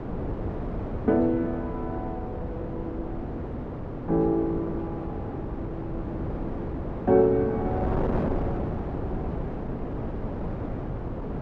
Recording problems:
wind noise; below 450 Hz, SNR 4 dB

